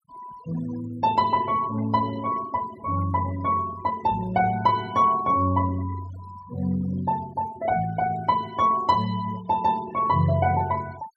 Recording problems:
noise reduction artefacts; signal-to-artefact ratio 19 dB

